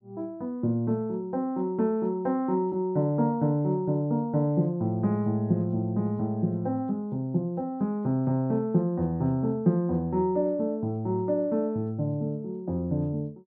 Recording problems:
none

